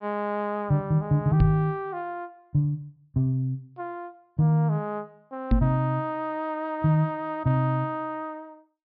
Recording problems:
treble missing; nothing above 5.5 kHz
knock on the microphone; at 1.5 s and at 5.5 s; peak +8 dB vs average level

